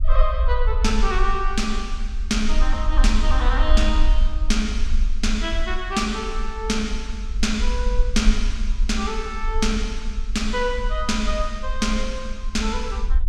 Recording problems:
rumble; below 44 Hz, strongest tone 22 Hz, SNR 0 dB

